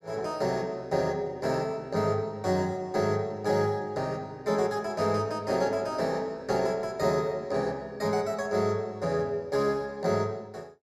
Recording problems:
none

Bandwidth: 13.5 kHz